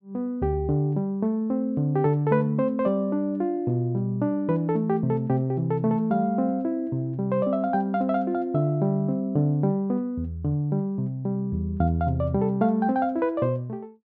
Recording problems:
none

